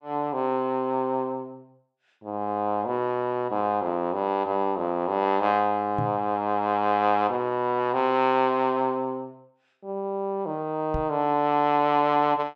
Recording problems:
knock on the microphone; at 6 s and at 11 s; peak -2 dB vs average level

